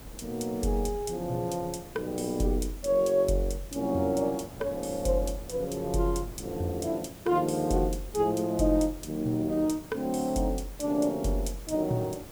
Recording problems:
hiss; slope -3 dB per octave, SNR 20 dB
wind noise; below 430 Hz, SNR 20 dB

